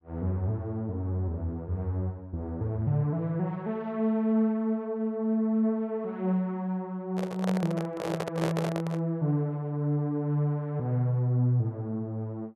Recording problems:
microphone handling noise; from 7 to 9 s; peak +2 dB vs average level

